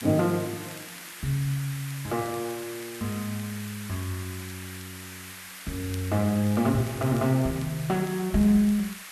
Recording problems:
hiss; SNR 12 dB
crackle; vinyl, SNR 27 dB

